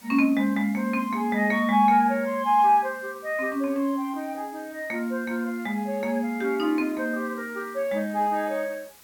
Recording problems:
hiss; slope -1 dB per octave, SNR 25 dB

